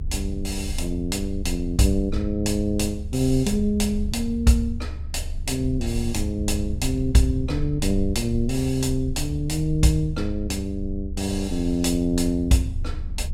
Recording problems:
rumble; below 74 Hz, strongest tone 24 Hz, SNR 7 dB

